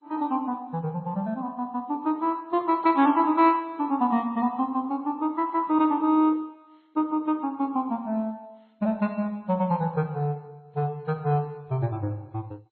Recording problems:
codec artefacts; MP3, then MP2, log-spectral distance 2 dB, nothing above 4.2 kHz

